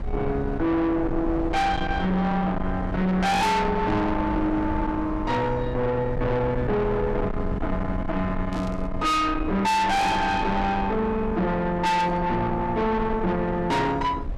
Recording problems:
distorted audio; soft clipping, signal-to-distortion ratio 6 dB
rumble; below 330 Hz, SNR 8 dB
static burst; at 8.5 s and at 12 s; peak -14 dB vs average level

